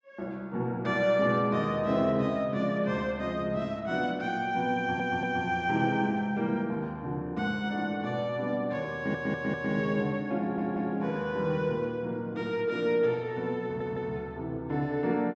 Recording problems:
stutter; 4 times, first at 5 s

